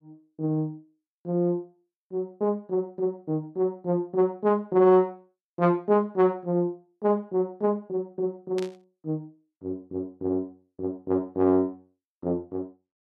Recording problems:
burst of static; at 8.5 s; peak -9 dB vs average level

